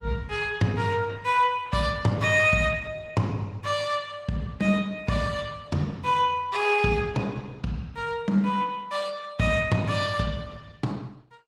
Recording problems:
lossy compression; Opus, log-spectral distance 3 dB

